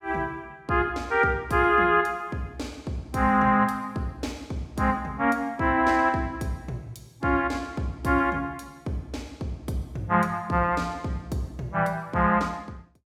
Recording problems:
none

